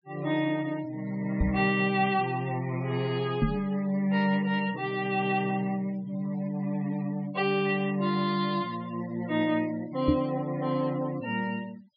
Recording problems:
treble missing; nothing above 5.5 kHz
noise reduction artefacts; signal-to-artefact ratio 20 dB
microphone thump; at 1.5 s, at 3.5 s and at 10 s; peak +8 dB vs average level

